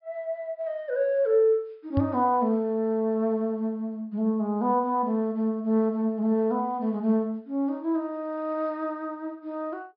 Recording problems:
low-pass filter; nothing above 5.5 kHz
knock on the microphone; at 2 s; peak +3 dB vs average level

